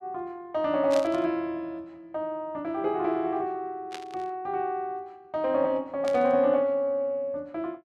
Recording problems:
burst of static; at 1 s, at 4 s and at 6 s; peak -6 dB vs average level

